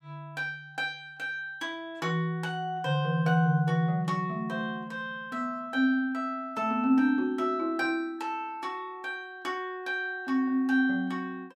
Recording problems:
none

